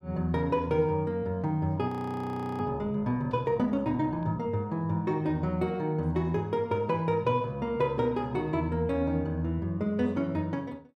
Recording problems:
audio freezing; at 2 s for 0.5 s

